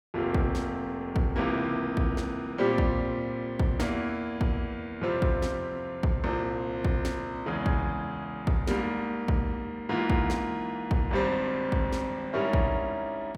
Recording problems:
none

